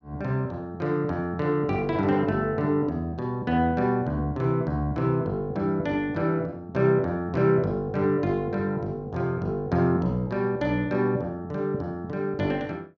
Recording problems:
none

